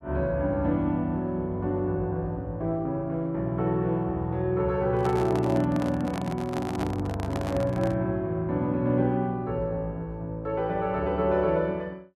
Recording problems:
handling noise; from 5 to 8 s; peak -2 dB vs average level

